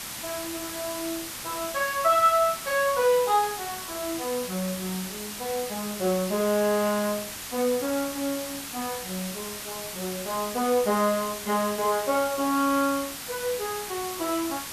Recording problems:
hiss; slope 0 dB per octave, SNR 7 dB

